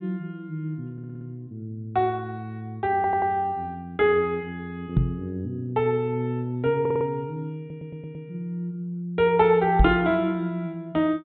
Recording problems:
treble missing; nothing above 4 kHz
audio stuttering; 4 times, first at 1 s
knock on the microphone; at 5 s and at 10 s; peak +9 dB vs average level

